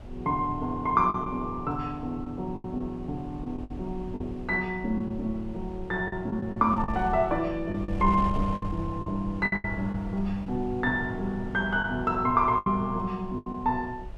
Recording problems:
wind noise; below 98 Hz, SNR 13 dB
lost packets; 8% of the sound replaced, filled with the last packet

